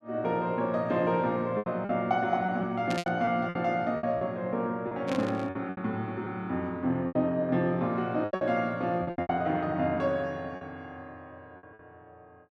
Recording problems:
packet loss; 10% of the sound replaced, filled with repeated pitch periods
burst of static; at 3 s and at 5 s; peak -2 dB vs average level

